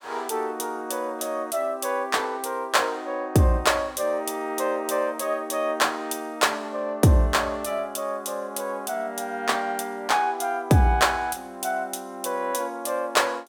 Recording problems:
none

